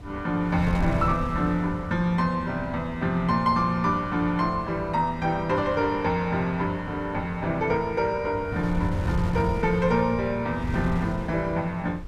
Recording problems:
wind noise; below 150 Hz, SNR 10 dB

